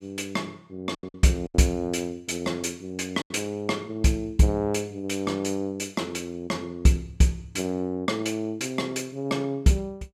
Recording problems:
lost packets; 3% of the sound replaced, filled with silence

